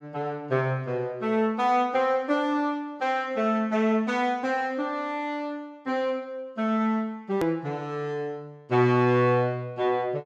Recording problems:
edit click; at 7.5 s

